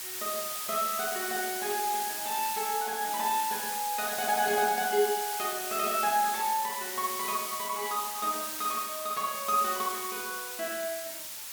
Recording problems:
background hiss; slope +3 dB per octave, SNR 3 dB

